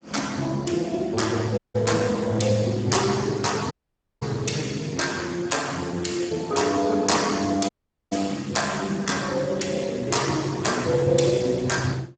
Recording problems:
codec artefacts; Speex, log-spectral distance 6 dB, nothing above 7.8 kHz
dropout; at 1.5 s, at 3.5 s for 0.5 s and at 7.5 s

